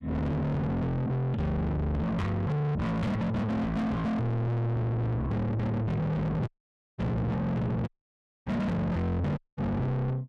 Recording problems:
distorted audio; soft clipping, signal-to-distortion ratio 7 dB
dropout; at 6.5 s for 0.5 s, at 8 s for 0.5 s and at 9.5 s

